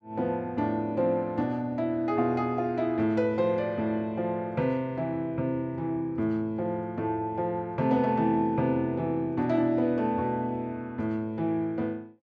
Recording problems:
none

